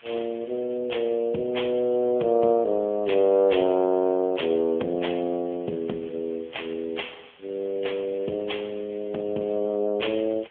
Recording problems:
telephone audio; 220 Hz to 3.4 kHz, AMR-NB
background hiss; SNR 28 dB

